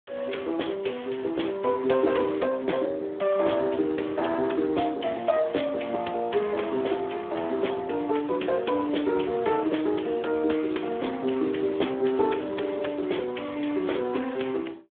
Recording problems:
phone line; 220 Hz to 3.6 kHz, Speex

